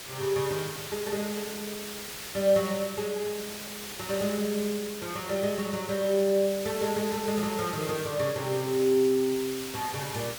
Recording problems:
background hiss; slope 0 dB per octave, SNR 9 dB

